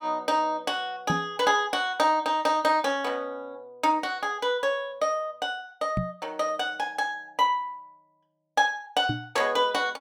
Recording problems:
microphone thump; at 1 s, at 6 s and at 9 s; peak +2 dB vs average level

